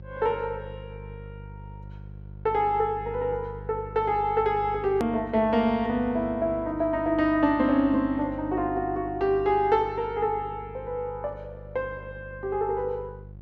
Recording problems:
hum; 50 Hz, harmonics up to 550 Hz, SNR 16 dB
hard cut with a click; at 5 s

